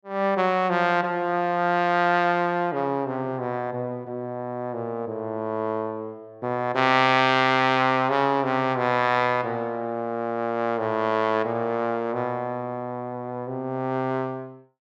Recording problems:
none

